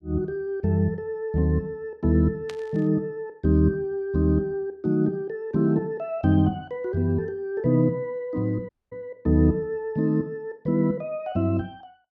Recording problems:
burst of static; at 2.5 s; peak -10 dB vs average level
dropout; at 8.5 s

